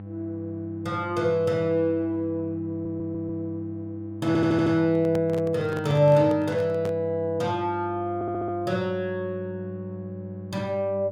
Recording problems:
electrical hum; 50 Hz, harmonics up to 800 Hz, SNR 13 dB
stutter; at 2.5 s, at 4.5 s and at 8 s
handling noise; from 5 to 7 s; peak -5 dB vs average level

